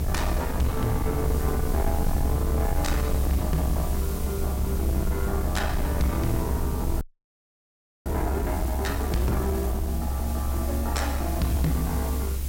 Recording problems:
distorted audio; soft clipping, signal-to-distortion ratio 10 dB
hiss; SNR 11 dB
rumble; below 86 Hz, strongest tone 68 Hz, SNR -1 dB
frozen audio; at 7 s for 1 s

